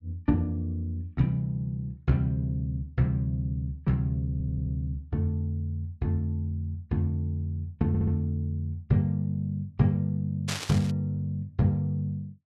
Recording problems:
stutter; at 4.5 s and at 8 s
burst of static; at 10 s; peak 0 dB vs average level

